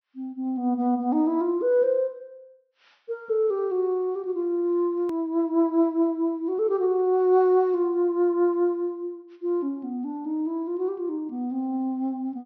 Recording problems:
treble missing; nothing above 6.1 kHz
click at an edit; at 5 s

